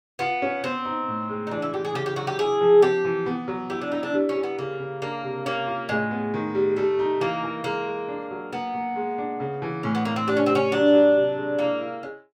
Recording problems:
none

